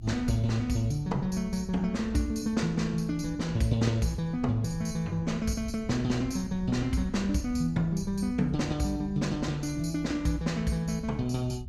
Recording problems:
rumble; below 110 Hz, SNR 14 dB

